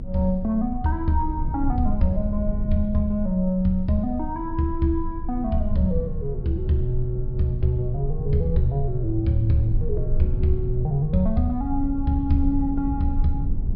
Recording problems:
low-pass filter; nothing above 5.5 kHz
electrical hum; 60 Hz, harmonics up to 720 Hz, SNR 26 dB
low-frequency rumble; below 64 Hz, strongest tone 22 Hz, SNR 6 dB

